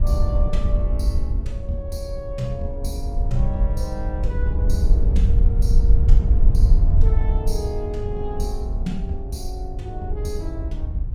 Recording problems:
wind noise; below 64 Hz, SNR -8 dB

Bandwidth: 16.5 kHz